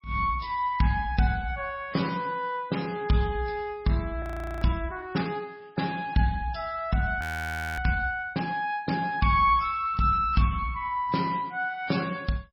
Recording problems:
lossy compression; MP3, log-spectral distance 3 dB, nothing above 17.1 kHz
frozen audio; at 4 s and at 7 s for 0.5 s

